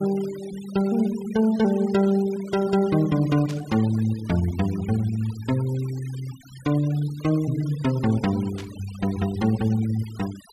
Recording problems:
denoising artefacts; signal-to-artefact ratio 19 dB
static burst; at 3.5 s and at 8.5 s; peak -11 dB vs average level

